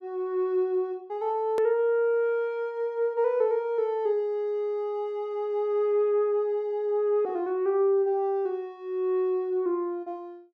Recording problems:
edit click; at 1.5 s

